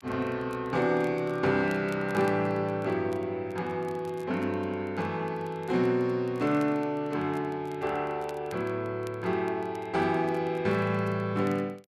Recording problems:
crackling; vinyl, SNR 28 dB

